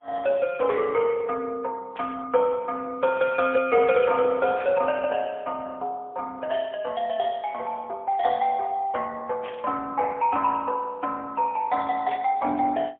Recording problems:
telephone audio; 300 Hz to 3.3 kHz, AMR-NB, then MP3
burst of static; 5 times, first at 2 s; peak -11 dB vs average level

